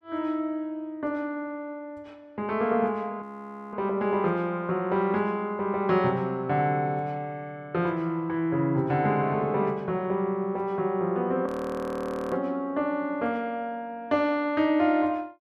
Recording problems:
frozen audio; at 3 s for 0.5 s and at 11 s for 1 s

